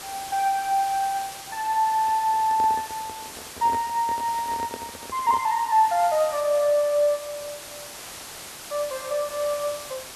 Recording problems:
hiss; slope -1 dB per octave, SNR 13 dB
handling noise; from 2 to 5.5 s; peak -7 dB vs average level

